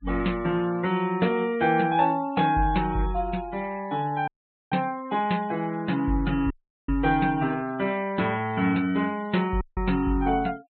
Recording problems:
treble cut off; nothing above 4 kHz
denoising artefacts; signal-to-artefact ratio 21 dB
dropout; at 4.5 s, at 6.5 s and at 9.5 s

